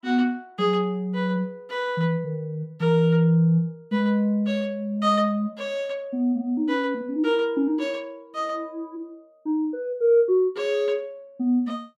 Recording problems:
none

